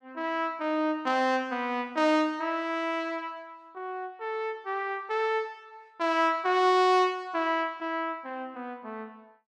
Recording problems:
none

